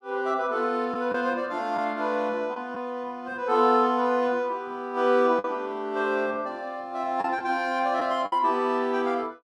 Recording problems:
lost packets; 2% of the sound replaced, filled with the last packet

